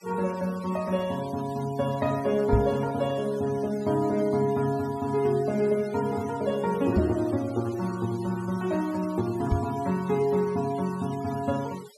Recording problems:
denoising artefacts; signal-to-artefact ratio 20 dB
microphone bump; at 2.5 s, at 7 s and at 9.5 s; peak +6 dB vs average level

